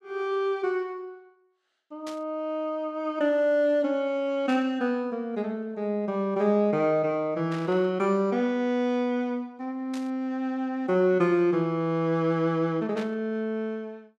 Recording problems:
burst of static; 5 times, first at 2 s; peak -10 dB vs average level

